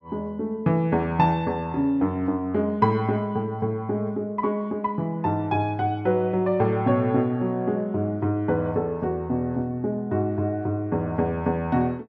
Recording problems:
none

